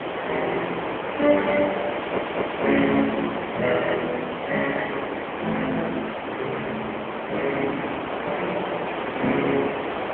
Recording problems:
telephone audio; 240 Hz to 3.2 kHz, AMR-NB
background hiss; SNR 3 dB
wind noise; below 1.6 kHz, SNR 13 dB
stutter; at 2 s

